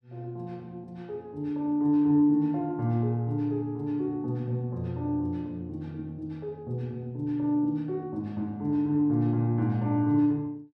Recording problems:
none

